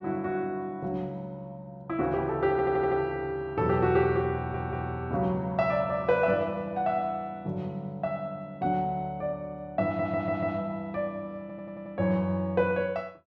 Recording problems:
stutter; 4 times, first at 2.5 s

